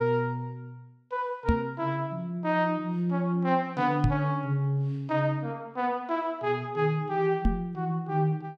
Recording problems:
microphone thump; at 1.5 s, at 4 s and at 7.5 s; peak +7 dB vs average level

